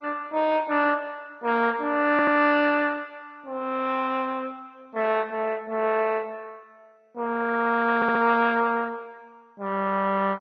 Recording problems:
lossy compression; MP2, log-spectral distance 4 dB, nothing above 5 kHz
audio stuttering; at 2 s and at 8 s

